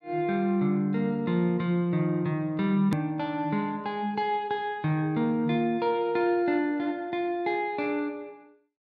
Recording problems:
edit click; at 3 s

